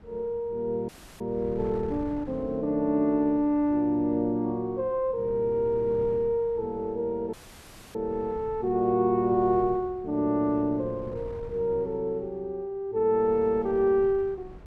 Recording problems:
wind noise; below 240 Hz, SNR 20 dB
audio cutting out; at 1 s and at 7.5 s for 0.5 s

